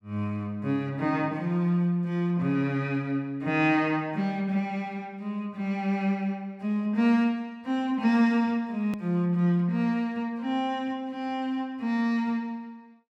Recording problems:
edit click; at 9 s

